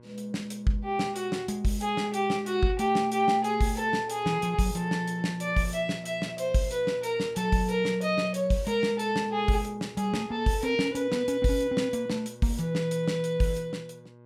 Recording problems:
hum; 60 Hz, harmonics up to 1.6 kHz, SNR 23 dB

